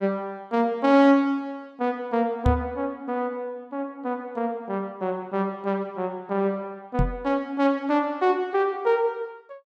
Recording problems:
knock on the microphone; at 2.5 s and at 7 s; peak +5 dB vs average level

